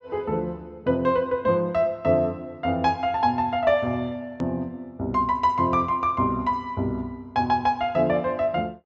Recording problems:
treble cut off; nothing above 8 kHz
hard cut with a click; at 4.5 s

